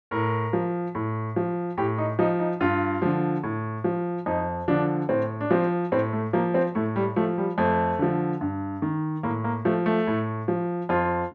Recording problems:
none

